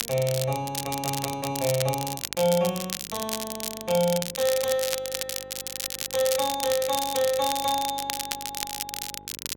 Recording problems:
hum; 50 Hz, harmonics up to 1.6 kHz, SNR 23 dB
crackling; vinyl, SNR 4 dB

